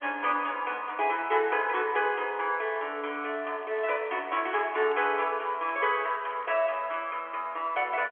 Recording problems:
telephone audio; 340 Hz to 3.3 kHz, G.711
crackle; from 3 to 7 s; loose cable, SNR 28 dB

